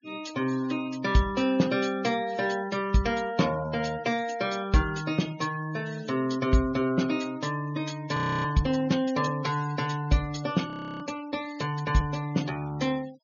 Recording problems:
treble cut off; nothing above 6.7 kHz
noise reduction artefacts; signal-to-artefact ratio 20 dB
frozen audio; at 8 s and at 11 s

